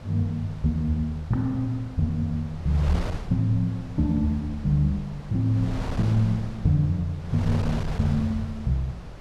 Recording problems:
wind on the microphone; below 270 Hz, SNR 11 dB

